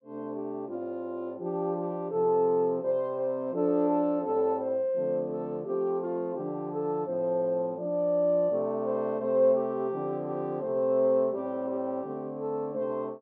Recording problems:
none

